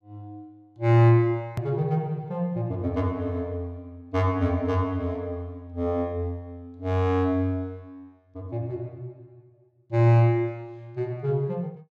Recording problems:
click at an edit; at 1.5 s

